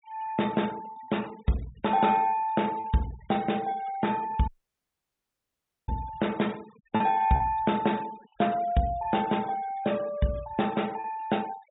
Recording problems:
treble cut off; nothing above 4 kHz
noise reduction artefacts; signal-to-artefact ratio 21 dB
packet loss; 3% of the sound replaced, filled with repeated pitch periods
audio cutting out; at 4.5 s for 1.5 s

